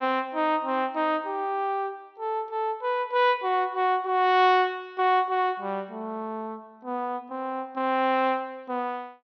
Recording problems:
low-pass filter; nothing above 6.1 kHz

